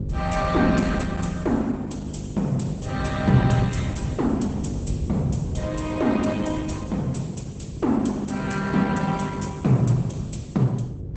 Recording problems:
codec artefacts; Opus, log-spectral distance 3 dB, nothing above 8.2 kHz
hum; 50 Hz, harmonics up to 550 Hz, SNR 10 dB
wind on the microphone; below 120 Hz, SNR 6 dB

